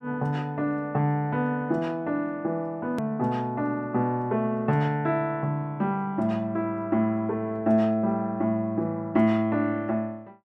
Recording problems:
click at an edit; at 3 s

